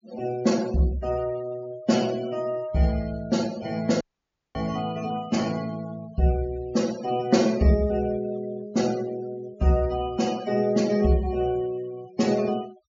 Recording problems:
low-pass filter; nothing above 7.3 kHz
denoising artefacts; signal-to-artefact ratio 18 dB
dropout; at 4 s for 0.5 s

